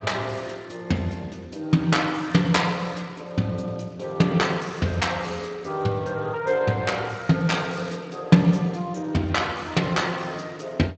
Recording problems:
lossy codec; Speex, log-spectral distance 7 dB, nothing above 7.8 kHz

